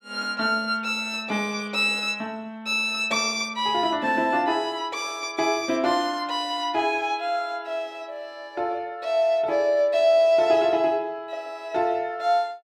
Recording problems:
none

